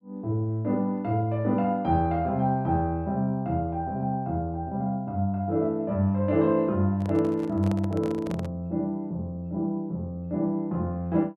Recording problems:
handling noise; from 7 to 8.5 s; peak -6 dB vs average level

